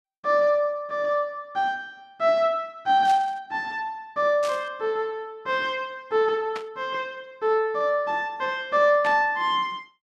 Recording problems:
burst of static; 4 times, first at 3 s; peak -7 dB vs average level

